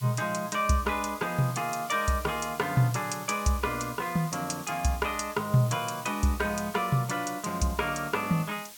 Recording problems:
background hiss; slope +2 dB per octave, SNR 15 dB

